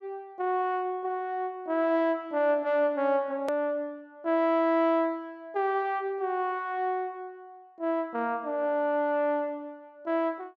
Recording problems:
hard cut with a click; at 3.5 s

